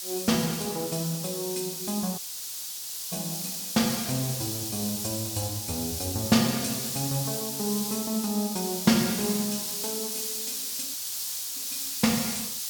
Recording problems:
hiss; SNR 2 dB
dropout; at 2 s for 1 s and at 11 s for 0.5 s

